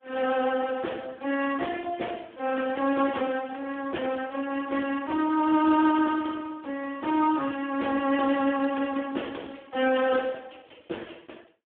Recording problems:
phone line; 240 Hz to 2.8 kHz, Speex

